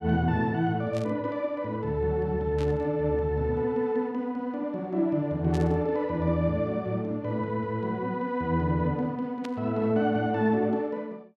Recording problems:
static burst; 4 times, first at 1 s; peak -10 dB vs average level

